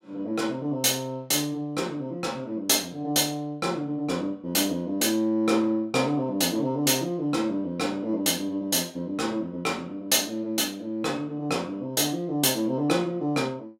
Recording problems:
none

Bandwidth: 16.5 kHz